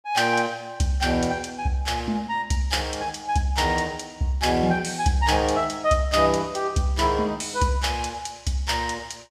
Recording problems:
none

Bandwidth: 15.5 kHz